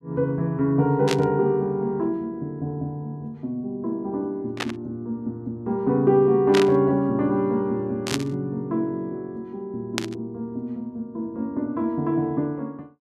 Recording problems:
static burst; 5 times, first at 1 s; peak +3 dB vs average level

